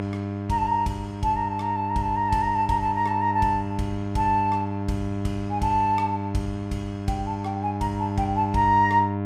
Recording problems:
hum; 50 Hz, harmonics up to 1.7 kHz, SNR 5 dB

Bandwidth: 15.5 kHz